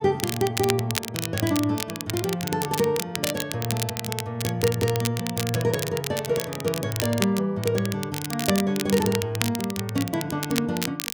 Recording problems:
crackle; vinyl, SNR 5 dB

